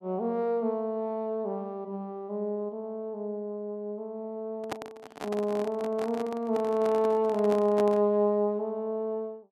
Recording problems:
microphone handling noise; from 4.5 to 8 s; peak -1 dB vs average level

